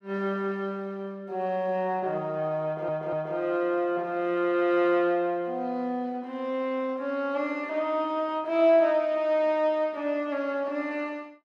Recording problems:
stutter; at 2.5 s

